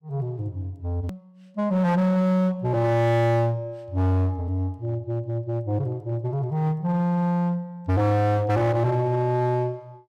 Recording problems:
distorted audio; hard clipping, uneven, signal-to-distortion ratio 8 dB
click at an edit; at 1 s

